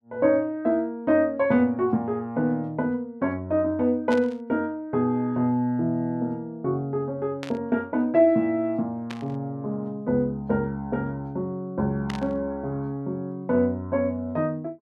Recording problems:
burst of static; 4 times, first at 4 s; peak -6 dB vs average level

